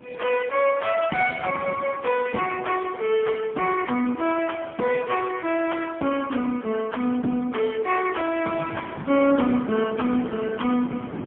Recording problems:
telephone audio; 170 Hz to 3.2 kHz, AMR-NB, then MP3
wind on the microphone; below 470 Hz, SNR 15 dB

